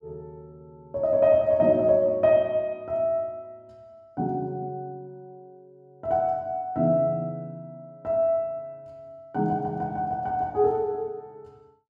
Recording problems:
none

